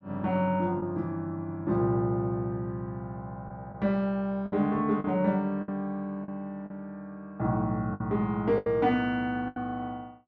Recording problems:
lost packets; 5% of the sound replaced, filled with the last packet

